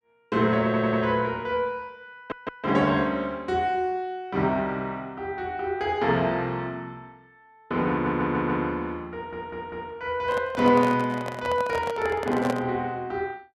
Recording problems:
stutter; 4 times, first at 0.5 s
microphone handling noise; from 10 to 13 s; peak 0 dB vs average level

